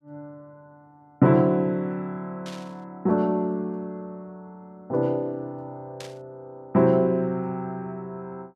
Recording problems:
burst of static; at 2.5 s and at 6 s; peak -11 dB vs average level

